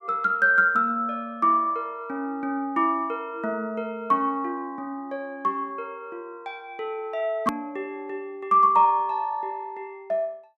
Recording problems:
edit click; at 7.5 s

